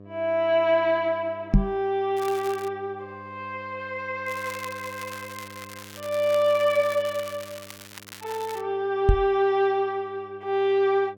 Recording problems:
hum; 50 Hz, harmonics up to 1.1 kHz, SNR 22 dB
microphone bump; at 1.5 s and at 9 s; peak +9 dB vs average level
crackle; at 2 s and from 4.5 to 8.5 s; loose cable, SNR 17 dB

